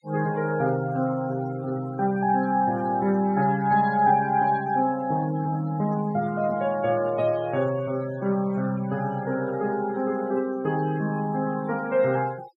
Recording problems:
denoising artefacts; signal-to-artefact ratio 19 dB

